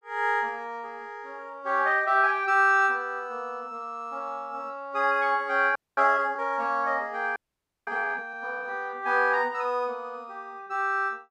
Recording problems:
audio freezing; at 6 s and at 7.5 s for 0.5 s

